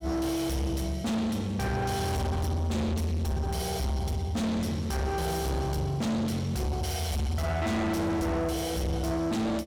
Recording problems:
distortion; soft clipping, signal-to-distortion ratio 6 dB

